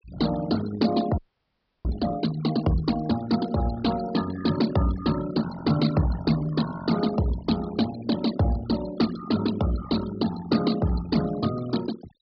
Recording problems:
treble cut off; nothing above 5.5 kHz
noise reduction artefacts; signal-to-artefact ratio 12 dB
frozen audio; at 1 s for 0.5 s

